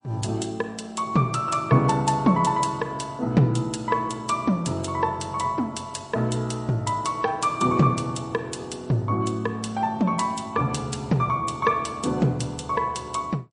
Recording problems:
lossy codec; MP3, log-spectral distance 3 dB, nothing above 9.5 kHz

